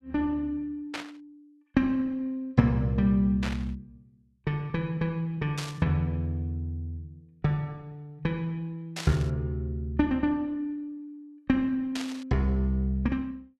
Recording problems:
burst of static; 5 times, first at 1 s; peak -1 dB vs average level

